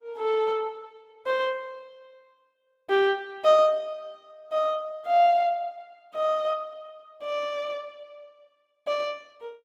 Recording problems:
codec artefacts; Opus, log-spectral distance 2 dB

